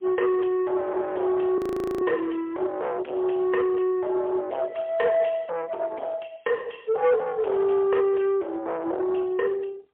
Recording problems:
telephone audio; 390 Hz to 2.7 kHz, AMR-NB, then MP3
distortion; soft clipping, signal-to-distortion ratio 6 dB
audio freezing; at 1.5 s

